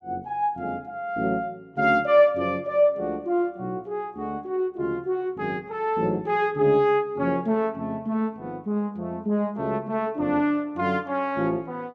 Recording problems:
none

